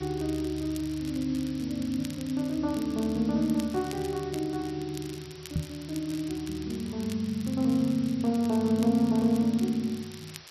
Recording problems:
lossy compression; MP2, log-spectral distance 9 dB
hiss; slope +1 dB per octave, SNR 19 dB
crackling; vinyl, SNR 19 dB
knock on the microphone; at 5.5 s; peak +3 dB vs average level

